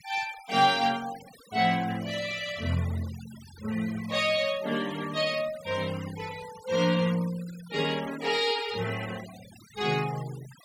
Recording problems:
noise reduction artefacts; signal-to-artefact ratio 17 dB

